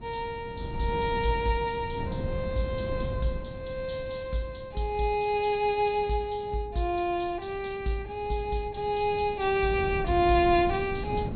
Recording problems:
low-pass filter; nothing above 4.3 kHz
wind on the microphone; below 200 Hz, SNR 10 dB

